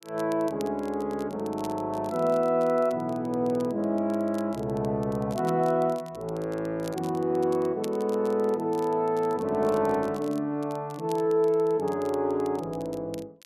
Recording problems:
crackle; vinyl, SNR 24 dB

